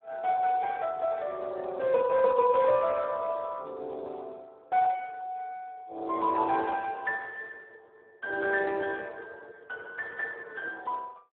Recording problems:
telephone audio; 300 Hz to 3 kHz, Speex

